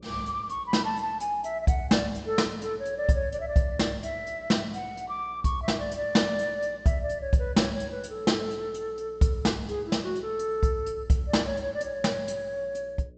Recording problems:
treble cut off; nothing above 8 kHz
electrical hum; 60 Hz, harmonics up to 600 Hz, SNR 26 dB

